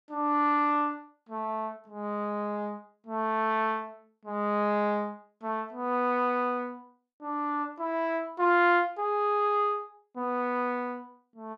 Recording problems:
none

